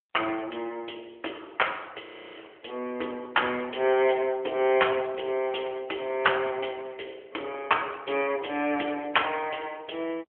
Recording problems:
telephone audio; 280 Hz to 3.3 kHz, AMR-NB
audio freezing; at 2 s

